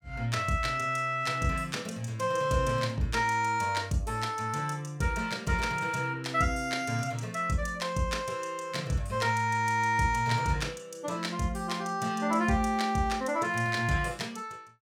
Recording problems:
none

